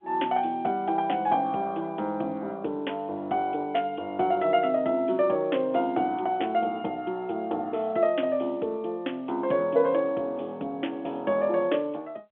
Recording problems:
telephone audio; 240 Hz to 3.5 kHz, G.711

